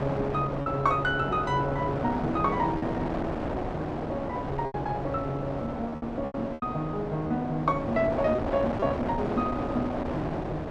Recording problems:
wind noise; below 780 Hz, SNR 3 dB
lost packets; 4% of the sound replaced, filled with repeated pitch periods

